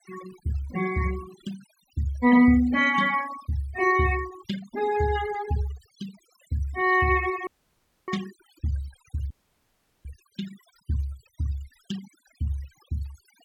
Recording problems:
denoising artefacts; signal-to-artefact ratio 16 dB
audio cutting out; at 7.5 s for 0.5 s and at 9.5 s for 0.5 s

